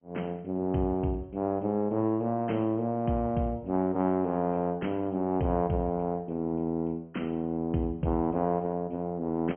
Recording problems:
treble cut off; nothing above 3.2 kHz
codec artefacts; Opus, then MP2, log-spectral distance 2 dB

